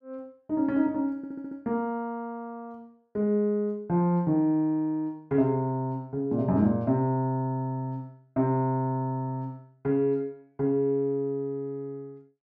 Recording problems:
audio stuttering; at 1 s

